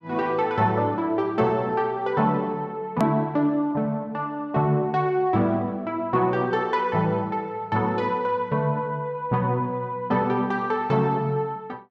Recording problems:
click at an edit; at 3 s

